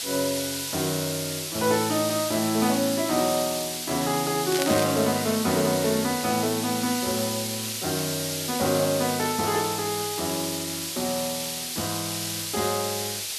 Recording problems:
hiss; SNR 3 dB
crackle; at 4.5 s; loose cable, SNR 7 dB

